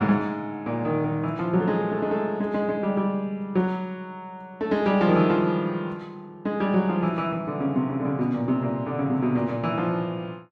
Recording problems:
none

